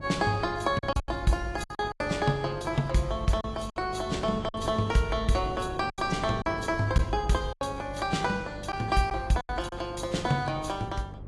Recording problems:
codec artefacts; AAC, log-spectral distance 3 dB, nothing above 11.6 kHz
hum; 50 Hz, harmonics up to 350 Hz, SNR 16 dB
wind noise; below 390 Hz, SNR 15 dB
packet loss; 7% of the sound replaced, filled with silence

